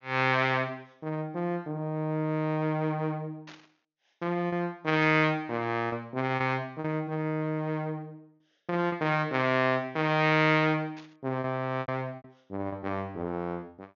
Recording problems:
treble missing; nothing above 6.8 kHz
packet loss; 4% of the sound replaced, filled with repeated pitch periods
static burst; at 3.5 s, at 5 s and at 11 s; peak -14 dB vs average level

